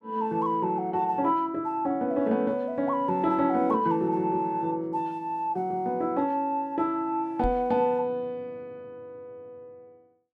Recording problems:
microphone bump; at 7.5 s; peak -3 dB vs average level

